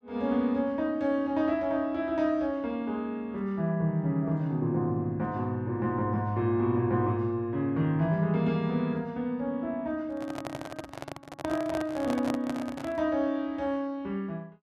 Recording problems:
microphone handling noise; from 10 to 13 s; peak -2 dB vs average level

